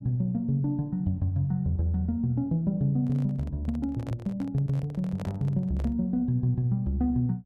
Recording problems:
microphone handling noise; from 3 to 6 s; peak -9 dB vs average level

